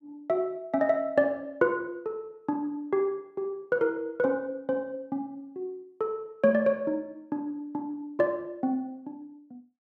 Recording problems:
none

